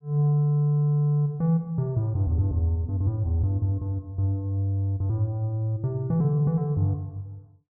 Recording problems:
none

